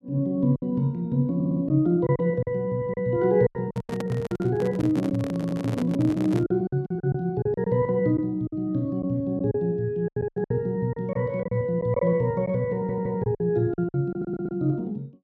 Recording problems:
packet loss; 10% of the sound replaced, filled with silence
stutter; 4 times, first at 1.5 s
handling noise; from 3.5 to 6.5 s; peak -3 dB vs average level

